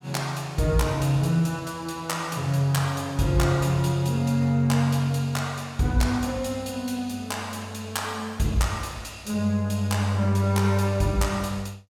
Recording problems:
none

